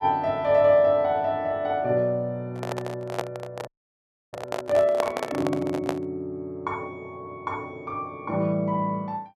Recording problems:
handling noise; from 2.5 to 6 s; peak +2 dB vs average level
audio freezing; at 3.5 s for 0.5 s

